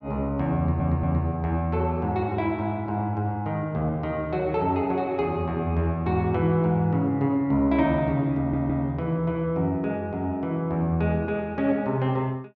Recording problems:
stutter; at 0.5 s and at 8.5 s

